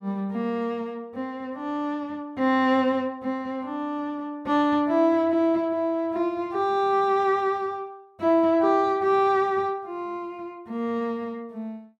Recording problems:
none

